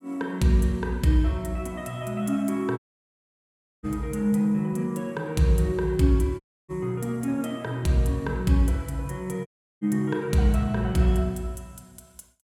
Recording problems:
dropout; at 3 s for 1 s, at 6.5 s and at 9.5 s

